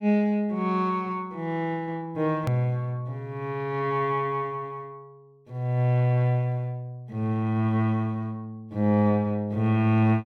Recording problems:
edit click; at 2.5 s

